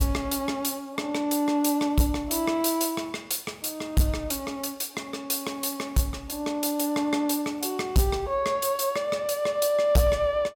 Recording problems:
distorted audio; hard clipping, signal-to-distortion ratio 11 dB

